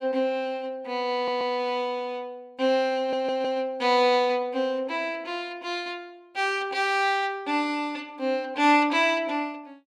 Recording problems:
audio stuttering; at 1 s and at 3 s

